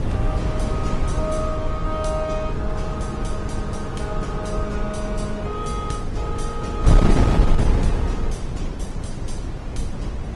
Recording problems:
lossy codec; MP3, then Opus, log-spectral distance 2 dB, nothing above 10.7 kHz
wind on the microphone; below 150 Hz, SNR -5 dB

